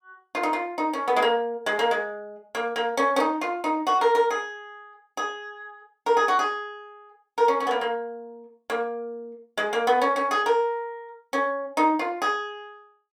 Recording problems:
none

